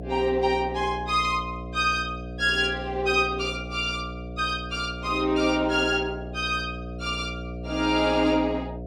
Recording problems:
hum; 60 Hz, harmonics up to 720 Hz, SNR 11 dB

